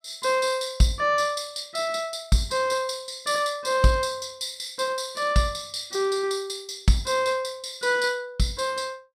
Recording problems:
none

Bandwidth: 15.5 kHz